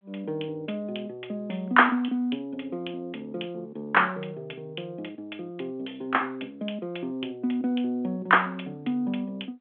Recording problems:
telephone audio; 220 Hz to 3.4 kHz, G.726

